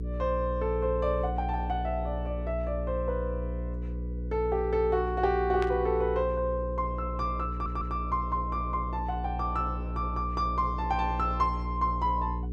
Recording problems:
hum; 60 Hz, harmonics up to 480 Hz, SNR 5 dB
burst of static; at 5.5 s; peak -5 dB vs average level
audio stuttering; at 7.5 s

